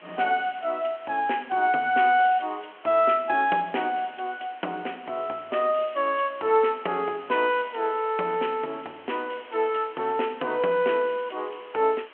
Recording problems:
phone line; 280 Hz to 3.3 kHz, G.726
hiss; SNR 23 dB

